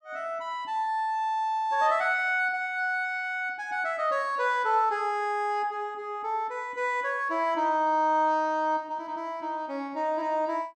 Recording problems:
none

